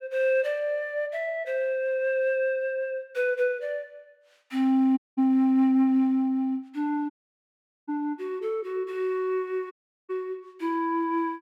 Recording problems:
audio cutting out; at 5 s, at 7 s for 1 s and at 9.5 s

